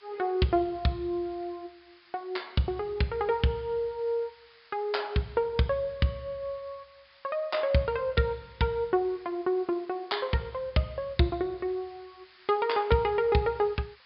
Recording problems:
low-pass filter; nothing above 5.1 kHz
hiss; SNR 27 dB

